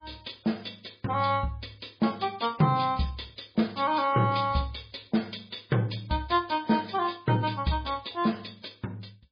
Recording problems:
lossy codec; MP3, log-spectral distance 7 dB

